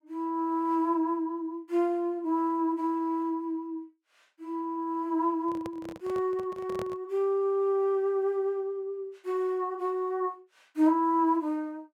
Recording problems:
handling noise; from 5.5 to 7 s; peak -7 dB vs average level

